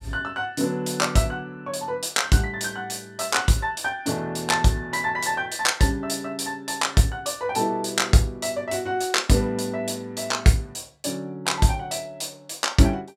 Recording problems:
none

